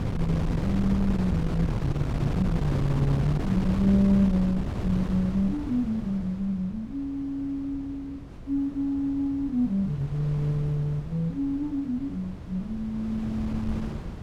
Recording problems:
wind noise; below 240 Hz, SNR 4 dB

